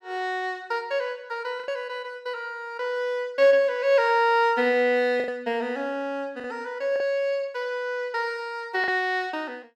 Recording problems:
lost packets; 3% of the sound replaced, filled with the last packet

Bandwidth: 15.5 kHz